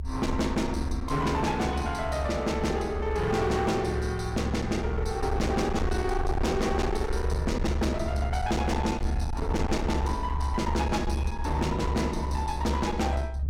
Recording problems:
distortion; hard clipping, uneven, signal-to-distortion ratio 7 dB
low-frequency rumble; below 72 Hz, strongest tone 68 Hz, SNR 3 dB

